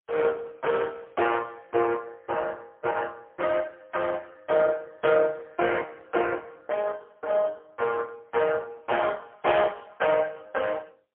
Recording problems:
telephone audio; 320 Hz to 3.3 kHz, AMR-NB, then MP3

